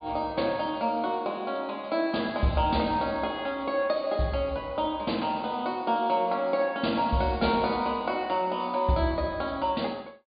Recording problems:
treble cut off; nothing above 4.8 kHz

